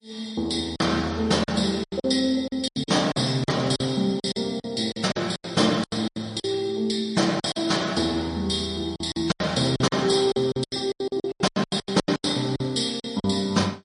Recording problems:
codec artefacts; MP3, log-spectral distance 3 dB, nothing above 10.4 kHz
packet loss; 16% of the sound replaced, filled with silence

